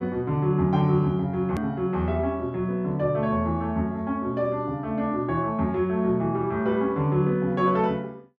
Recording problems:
edit click; at 1.5 s

